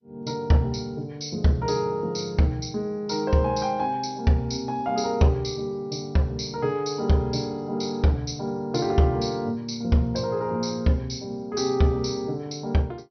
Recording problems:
lossy compression; MP2, log-spectral distance 4 dB, nothing above 6 kHz

